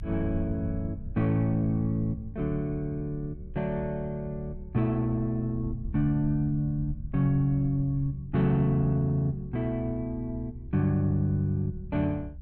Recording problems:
low-frequency rumble; below 82 Hz, SNR 13 dB

